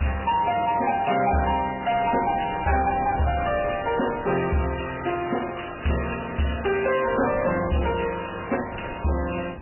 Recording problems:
lossy compression; AAC, then MP3, log-spectral distance 7 dB, nothing above 2.5 kHz
distorted audio; hard clipping, signal-to-distortion ratio 11 dB
wind on the microphone; below 1 kHz, SNR 17 dB

